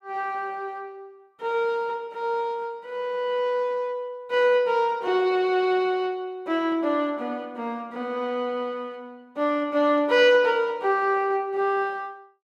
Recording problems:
none

